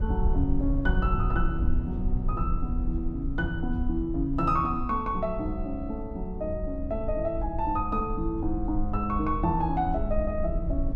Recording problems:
rumble; below 66 Hz, SNR 3 dB

